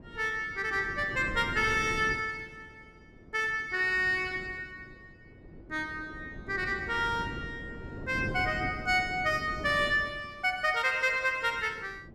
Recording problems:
wind noise; below 350 Hz, SNR 14 dB

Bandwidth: 14.5 kHz